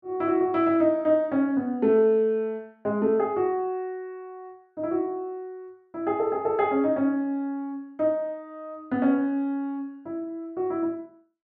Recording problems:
none

